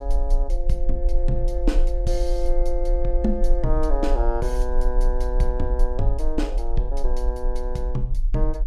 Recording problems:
low-frequency rumble; below 40 Hz, SNR -2 dB

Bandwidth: 14.5 kHz